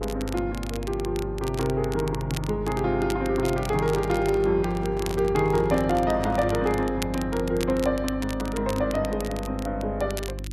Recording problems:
hum; 50 Hz, harmonics up to 350 Hz, SNR 10 dB
crackle; vinyl, SNR 15 dB
microphone handling noise; from 3.5 to 7 s; peak -9 dB vs average level

